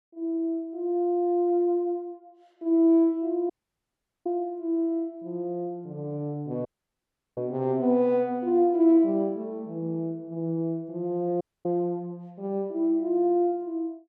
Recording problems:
audio cutting out; at 3.5 s for 1 s, at 6.5 s for 0.5 s and at 11 s

